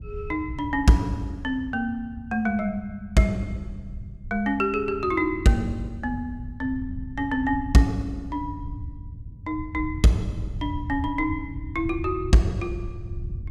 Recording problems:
low-frequency rumble; below 110 Hz, SNR 11 dB

